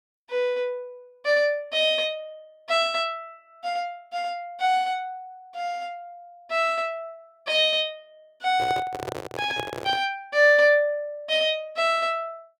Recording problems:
microphone handling noise; from 8.5 to 10 s; peak -4 dB vs average level

